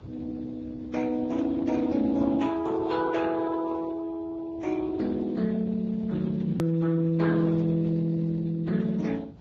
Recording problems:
lossy compression; Speex, then Vorbis, log-spectral distance 3 dB, nothing above 13.1 kHz
rumble; below 260 Hz, SNR 20 dB
click at an edit; at 6.5 s

